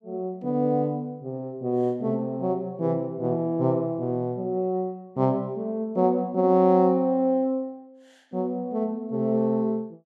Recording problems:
none

